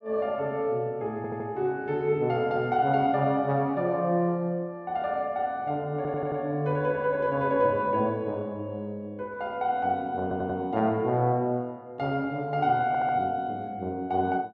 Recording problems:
audio stuttering; 4 times, first at 1 s

